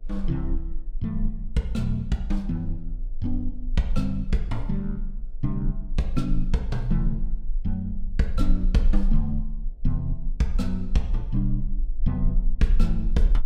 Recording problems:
hum; 60 Hz, harmonics up to 720 Hz, SNR 33 dB
rumble; below 34 Hz, strongest tone 24 Hz, SNR 3 dB

